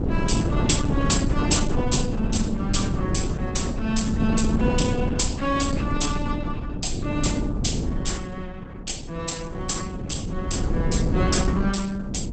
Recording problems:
lossy compression; Opus, log-spectral distance 5 dB, nothing above 8 kHz
wind on the microphone; below 230 Hz, SNR -2 dB

